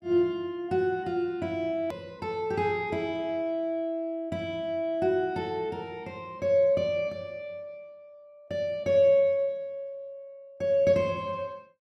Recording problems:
hard cut with a click; at 2 s

